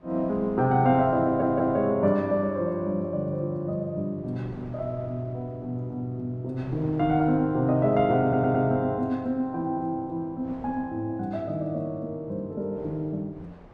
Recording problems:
wind on the microphone; below 650 Hz, SNR 22 dB
audio stuttering; at 1.5 s and at 8 s

